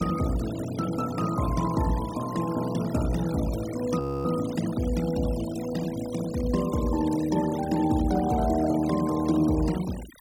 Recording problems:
noise reduction artefacts; signal-to-artefact ratio 15 dB
frozen audio; at 4 s

